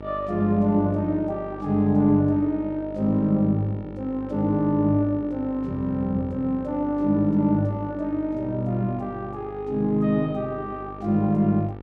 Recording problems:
hum; 50 Hz, harmonics up to 1.9 kHz, SNR 16 dB

